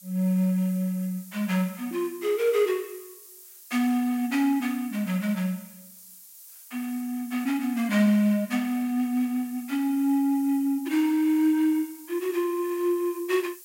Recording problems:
background hiss; SNR 20 dB

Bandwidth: 16 kHz